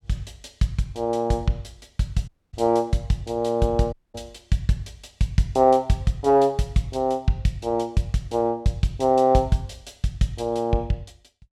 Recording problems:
dropout; at 2.5 s and at 4 s

